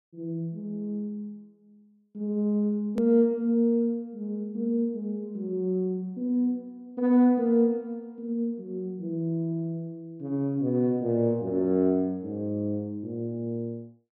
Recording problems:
click at an edit; at 3 s

